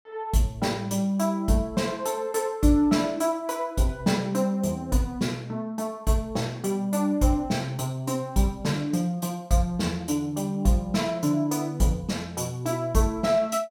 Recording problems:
none

